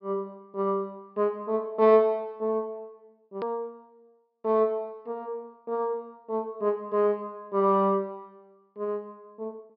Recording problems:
treble cut off; nothing above 5.5 kHz
edit click; at 3.5 s

